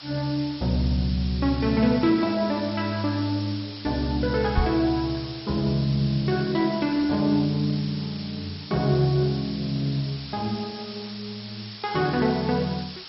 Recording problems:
lossy compression; MP2, log-spectral distance 11 dB, nothing above 5.5 kHz
hiss; slope +2 dB per octave, SNR 13 dB
microphone thump; at 4.5 s; peak +3 dB vs average level

